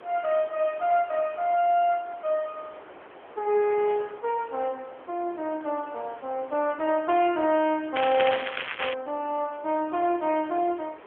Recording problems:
telephone audio; 280 Hz to 3.4 kHz, AMR-NB
background hiss; SNR 22 dB
wind on the microphone; below 1.8 kHz, SNR 24 dB
crackle; at 8 s; loose cable, SNR 5 dB

